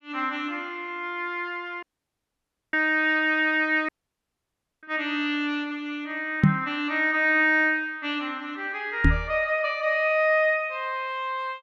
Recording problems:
dropout; at 2 s for 1 s and at 4 s for 1 s
microphone thump; at 6.5 s and at 9 s; peak +10 dB vs average level

